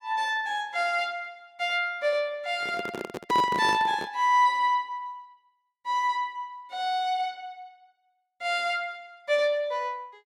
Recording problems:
microphone handling noise; from 2.5 to 4 s; peak -1 dB vs average level

